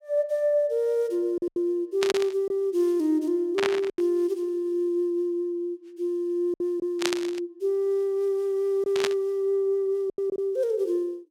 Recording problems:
packet loss; 4% of the sound replaced, filled with silence
burst of static; 4 times, first at 2 s; peak +3 dB vs average level

